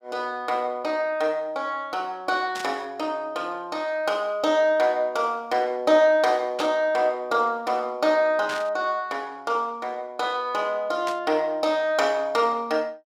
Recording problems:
static burst; 4 times, first at 2.5 s; peak -5 dB vs average level

